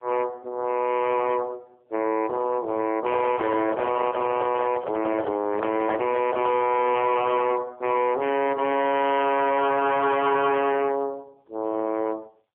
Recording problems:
telephone audio; 280 Hz to 3.3 kHz, AMR-NB
distorted audio; hard clipping, signal-to-distortion ratio 6 dB
microphone handling noise; from 3 to 6.5 s; peak -1 dB vs average level

